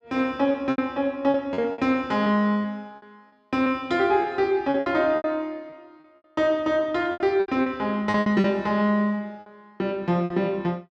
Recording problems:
packet loss; 11% of the sound replaced, filled with repeated pitch periods

